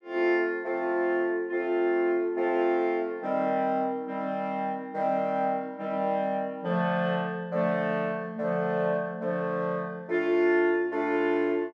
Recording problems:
none

